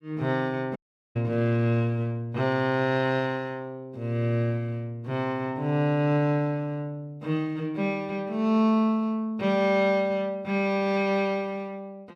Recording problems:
dropout; at 1 s

